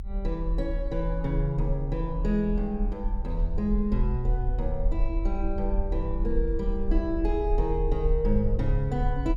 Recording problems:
rumble; below 46 Hz, strongest tone 36 Hz, SNR 1 dB

